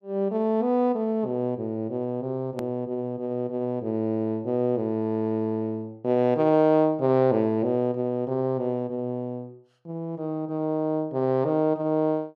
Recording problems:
hard cut with a click; at 2.5 s

